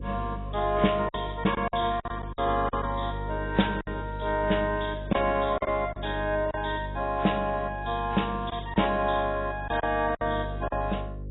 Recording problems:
lossy compression; AAC, log-spectral distance 5 dB, nothing above 3.8 kHz
hum; 50 Hz, harmonics up to 550 Hz, SNR 10 dB
packet loss; 6% of the sound replaced, filled with silence

